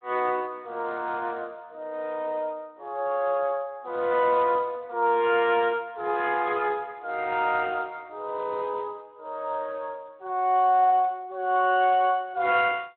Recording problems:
telephone audio; 280 Hz to 3.7 kHz, Speex

